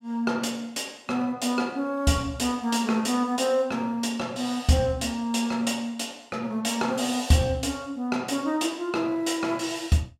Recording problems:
none

